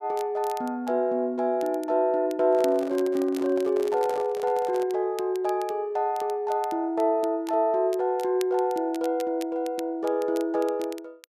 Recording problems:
crackling; vinyl, SNR 22 dB
handling noise; from 2.5 to 5 s; peak -9 dB vs average level

